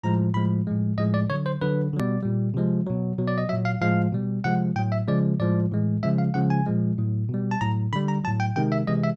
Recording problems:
edit click; at 2 s

